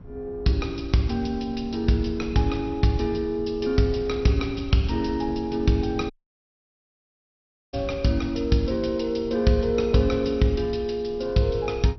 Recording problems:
lossy codec; MP2, log-spectral distance 3 dB, nothing above 5.8 kHz
wind on the microphone; below 150 Hz, SNR 17 dB
audio cutting out; at 6 s for 1.5 s

